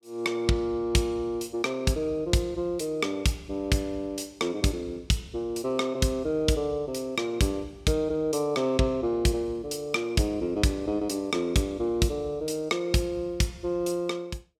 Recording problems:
none

